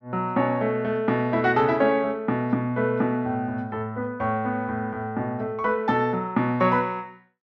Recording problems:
none

